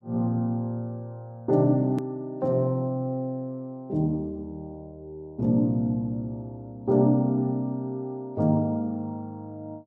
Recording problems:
hard cut with a click; at 2 s

